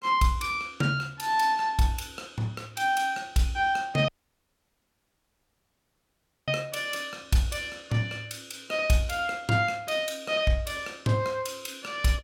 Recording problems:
audio cutting out; at 4 s for 2.5 s

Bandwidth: 17 kHz